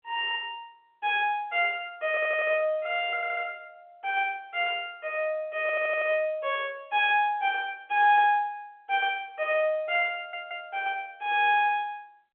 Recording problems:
phone line; 320 Hz to 3.5 kHz, G.711
stutter; 4 times, first at 2 s

